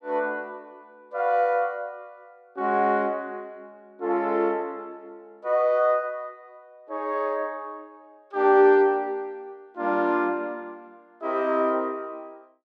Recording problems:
none

